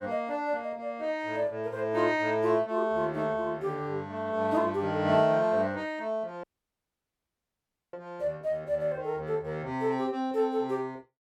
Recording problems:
audio cutting out; at 6.5 s for 1.5 s

